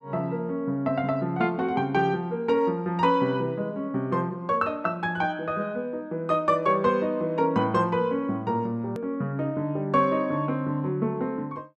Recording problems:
hard cut with a click; at 9 s

